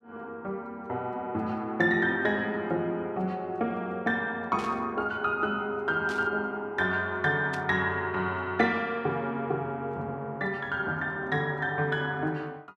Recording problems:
burst of static; at 4.5 s, at 6 s and at 7.5 s; peak -8 dB vs average level

